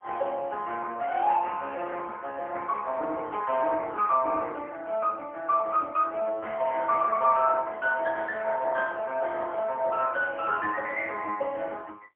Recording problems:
telephone audio; 340 Hz to 3.3 kHz, AMR-NB, then MP3

